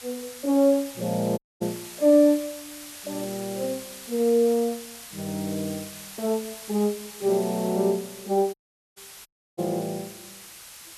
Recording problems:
background hiss; slope +2 dB per octave, SNR 15 dB
audio cutting out; at 1.5 s, at 8.5 s and at 9.5 s

